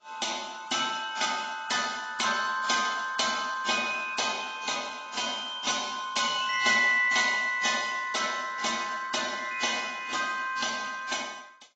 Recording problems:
lossy codec; AAC, then AAC, log-spectral distance 6 dB, nothing above 7.1 kHz

